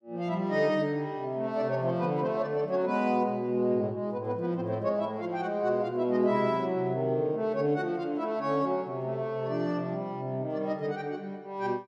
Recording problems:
none

